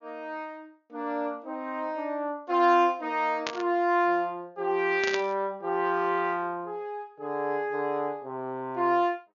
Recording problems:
treble cut off; nothing above 6.9 kHz
burst of static; at 3.5 s and at 5 s; peak 0 dB vs average level

